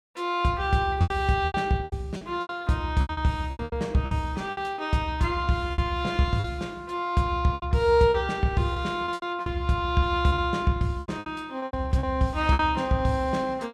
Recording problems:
packet loss; 13% of the sound replaced, filled with repeated pitch periods

